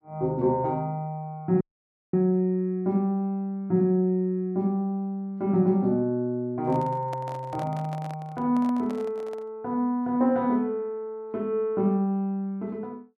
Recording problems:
audio cutting out; at 1.5 s for 0.5 s
microphone handling noise; from 6.5 to 9.5 s; peak -9 dB vs average level

